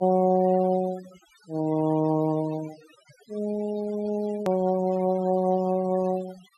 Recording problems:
noise reduction artefacts; signal-to-artefact ratio 21 dB
hard cut with a click; at 4.5 s

